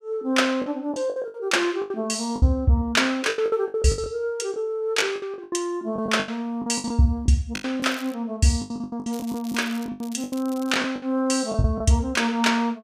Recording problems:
lost packets; 15% of the sound replaced, filled with the last packet
crackle; at 8 s and from 9 to 11 s; loose cable, SNR 20 dB

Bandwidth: 15 kHz